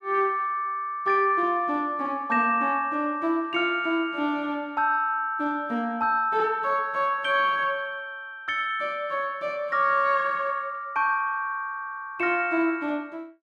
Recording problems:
none

